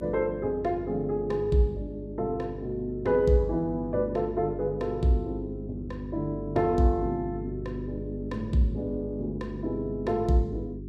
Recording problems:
hum; 50 Hz, harmonics up to 400 Hz, SNR 10 dB

